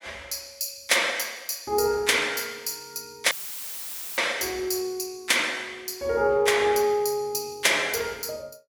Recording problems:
dropout; at 3.5 s for 1 s; filled with static

